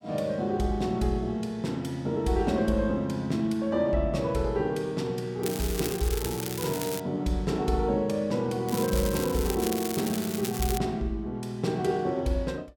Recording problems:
crackle; from 5.5 to 7 s and from 8.5 to 11 s; loose cable, SNR 7 dB

